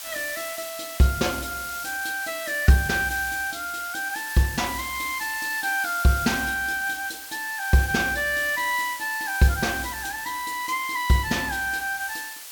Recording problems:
hiss; SNR 10 dB

